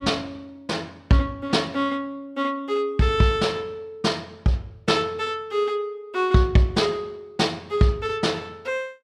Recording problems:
none

